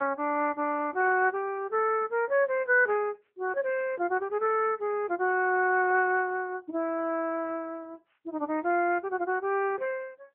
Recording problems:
telephone audio; 300 Hz to 3.3 kHz, AMR-NB

